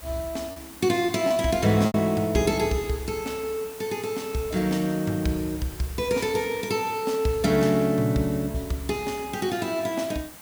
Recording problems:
background hiss; slope -2 dB per octave, SNR 17 dB
lost packets; 2% of the sound replaced, filled with repeated pitch periods

